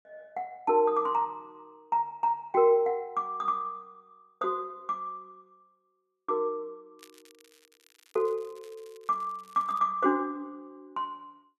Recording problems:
crackle; from 7 to 10 s; loose cable, SNR 29 dB

